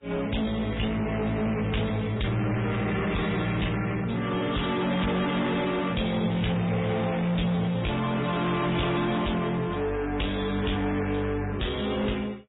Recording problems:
treble missing; nothing above 3.8 kHz
codec artefacts; MP3, log-spectral distance 5 dB
distortion; soft clipping, signal-to-distortion ratio 8 dB

